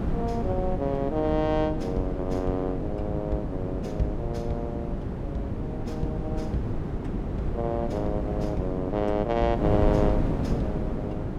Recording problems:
hum; 50 Hz, harmonics up to 400 Hz, SNR 11 dB
wind noise; below 280 Hz, SNR 1 dB

